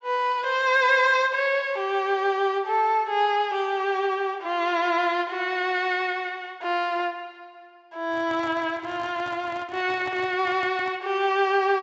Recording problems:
low-pass filter; nothing above 7.7 kHz
microphone handling noise; from 8 to 11 s; peak -11 dB vs average level

